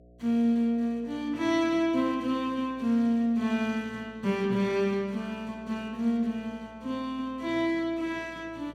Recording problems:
hum; 60 Hz, harmonics up to 720 Hz, SNR 26 dB

